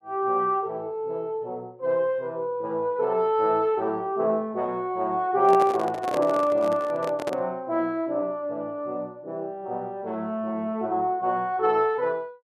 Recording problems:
microphone handling noise; from 5.5 to 7.5 s; peak 0 dB vs average level

